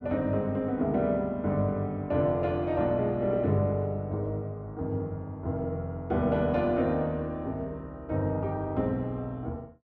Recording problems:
none

